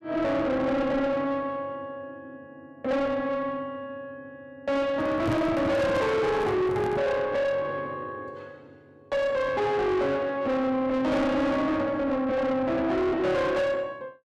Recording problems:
distorted audio; soft clipping, signal-to-distortion ratio 8 dB
microphone handling noise; from 5 to 7 s; peak +3 dB vs average level

